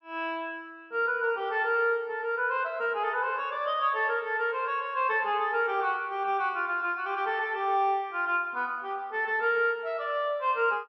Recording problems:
none

